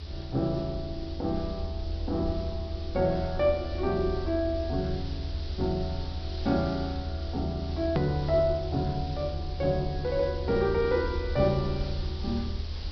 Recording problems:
treble missing; nothing above 5.5 kHz
hum; 60 Hz, harmonics up to 420 Hz, SNR 21 dB
hiss; SNR 15 dB
rumble; below 80 Hz, strongest tone 78 Hz, SNR 6 dB
click at an edit; at 8 s

